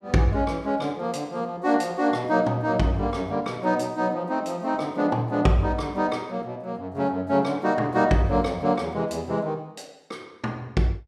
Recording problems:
none

